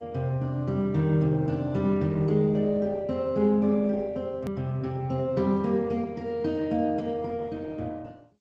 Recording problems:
lossy codec; G.722, then Opus, log-spectral distance 2 dB, nothing above 15.6 kHz
edit click; at 4.5 s

